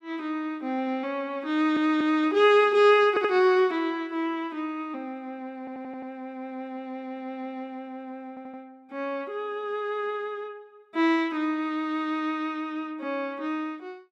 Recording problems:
audio stuttering; 4 times, first at 1.5 s

